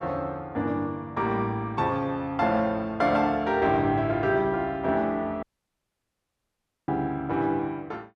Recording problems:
audio cutting out; at 5.5 s for 1.5 s

